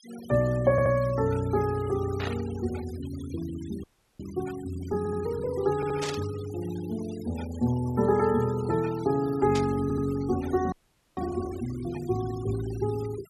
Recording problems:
denoising artefacts; signal-to-artefact ratio 19 dB
stutter; 4 times, first at 0.5 s
static burst; at 2 s, at 6 s and at 9.5 s; peak -3 dB vs average level
audio freezing; at 4 s and at 11 s

